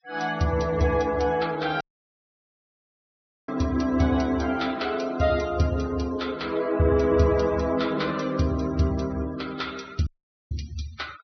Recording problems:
low-pass filter; nothing above 5.8 kHz
noise reduction artefacts; signal-to-artefact ratio 20 dB
audio cutting out; at 2 s for 1.5 s and at 10 s

